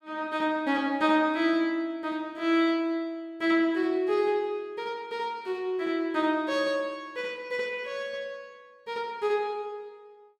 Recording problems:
none

